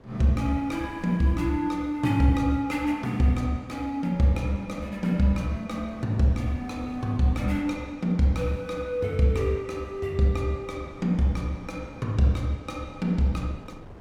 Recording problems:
wind noise; below 440 Hz, SNR 21 dB

